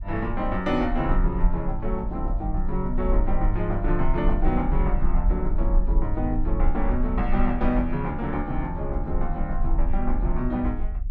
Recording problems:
rumble; below 42 Hz, strongest tone 22 Hz, SNR 1 dB

